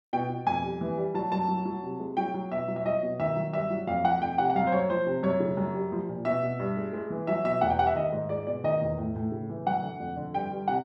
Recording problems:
none

